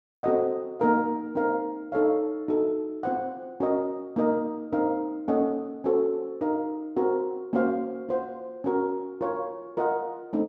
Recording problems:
none

